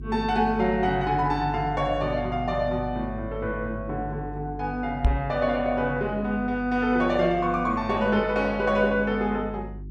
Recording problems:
hum; 50 Hz, harmonics up to 400 Hz, SNR 13 dB
microphone bump; at 5 s; peak +7 dB vs average level

